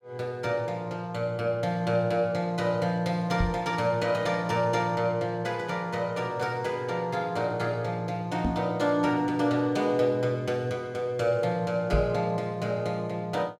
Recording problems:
microphone thump; at 3.5 s, at 8.5 s and at 12 s; peak +4 dB vs average level

